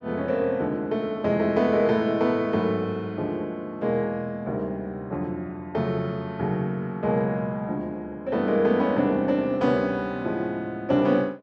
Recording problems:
none

